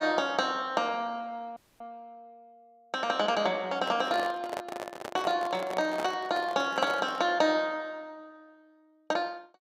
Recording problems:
audio cutting out; at 1.5 s
handling noise; from 3.5 to 7.5 s; peak -2 dB vs average level

